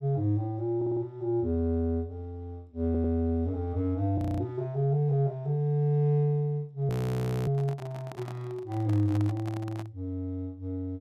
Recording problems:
stutter; at 1 s and at 3 s
frozen audio; at 4 s and at 7 s for 0.5 s
handling noise; from 7.5 to 10 s; peak -8 dB vs average level

